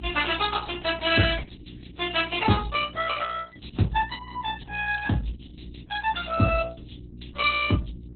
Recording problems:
lossy compression; Vorbis, then Opus, log-spectral distance 9 dB, nothing above 4.1 kHz
hum; 60 Hz, harmonics up to 420 Hz, SNR 19 dB

